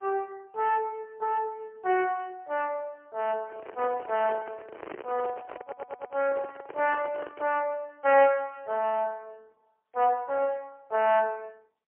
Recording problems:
phone line; 320 Hz to 2.9 kHz, AMR-NB, then MP3
handling noise; from 3.5 to 7.5 s; peak -8 dB vs average level
audio stuttering; at 5.5 s

